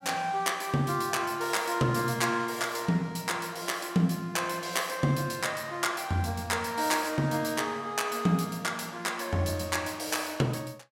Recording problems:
none

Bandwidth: 16 kHz